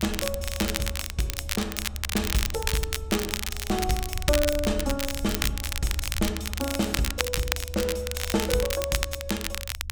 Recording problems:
rumble; below 74 Hz, SNR 7 dB
crackling; vinyl, SNR 1 dB

